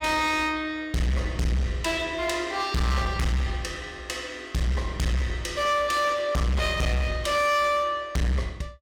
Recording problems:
distorted audio; hard clipping, uneven, signal-to-distortion ratio 7 dB

